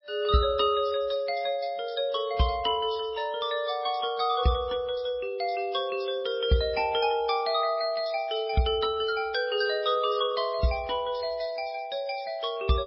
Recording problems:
codec artefacts; MP3, log-spectral distance 4 dB, nothing above 4.5 kHz

